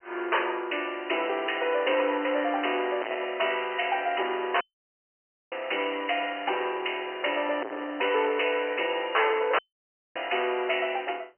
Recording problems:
telephone audio; 300 Hz to 3.1 kHz, G.711
distortion; soft clipping, signal-to-distortion ratio 3 dB
audio cutting out; at 4.5 s for 1 s and at 9.5 s for 0.5 s

